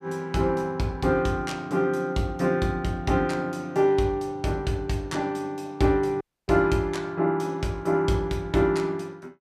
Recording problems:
audio cutting out; at 6 s

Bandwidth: 15 kHz